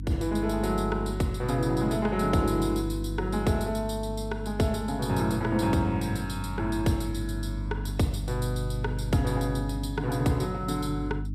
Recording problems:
hum; 50 Hz, harmonics up to 300 Hz, SNR 6 dB

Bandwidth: 14.5 kHz